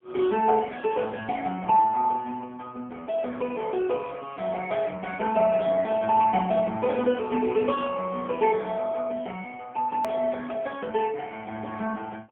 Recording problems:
telephone audio; 220 Hz to 3.3 kHz, AMR-NB, then MP3
edit click; at 10 s

